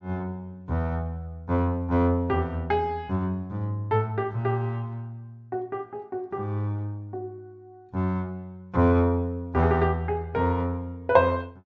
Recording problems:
treble cut off; nothing above 8 kHz

